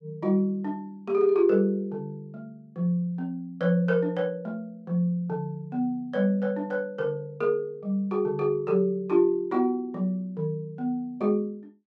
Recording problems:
none

